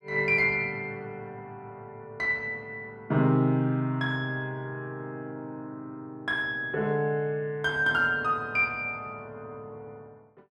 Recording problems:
none

